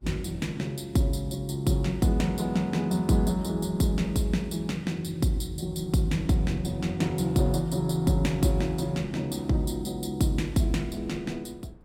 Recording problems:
wind noise; below 260 Hz, SNR 23 dB

